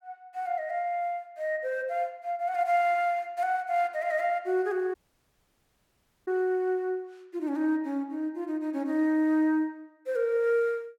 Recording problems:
dropout; at 5 s for 1.5 s

